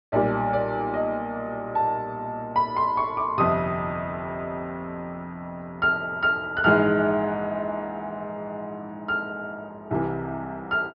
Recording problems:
treble cut off; nothing above 5.5 kHz

